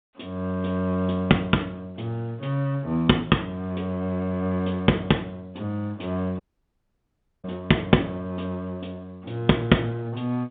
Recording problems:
phone line; 170 Hz to 3.6 kHz, G.711
audio cutting out; at 6.5 s for 1 s

